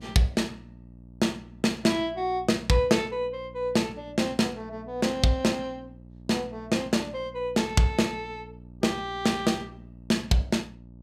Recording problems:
mains hum; 60 Hz, harmonics up to 600 Hz, SNR 20 dB

